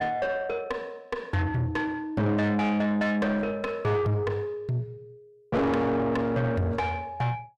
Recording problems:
distortion; soft clipping, signal-to-distortion ratio 6 dB

